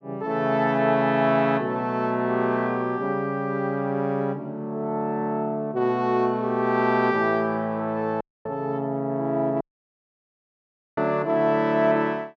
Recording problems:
dropout; at 8 s and at 9.5 s for 1.5 s

